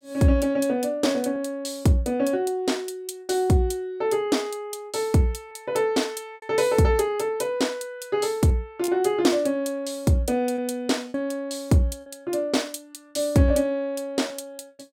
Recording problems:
packet loss; 3% of the sound replaced, filled with repeated pitch periods

